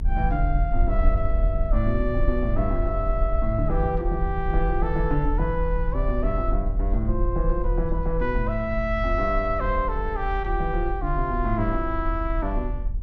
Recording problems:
rumble; below 48 Hz, strongest tone 38 Hz, SNR 1 dB

